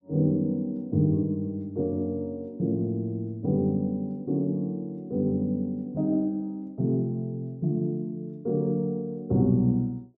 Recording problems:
none

